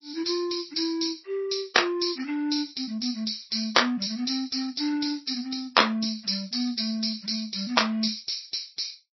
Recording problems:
codec artefacts; MP3, log-spectral distance 10 dB, nothing above 5.7 kHz

